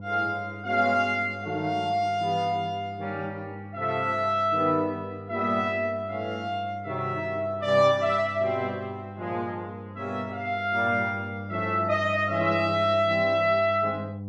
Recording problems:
mains hum; 50 Hz, harmonics up to 700 Hz, SNR 14 dB

